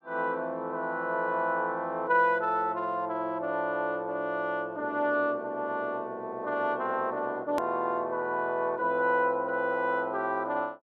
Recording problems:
edit click; at 7.5 s

